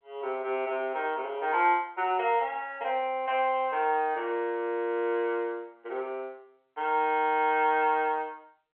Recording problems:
phone line; 320 Hz to 3.2 kHz, G.711

